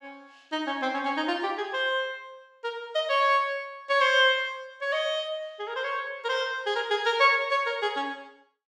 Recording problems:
none

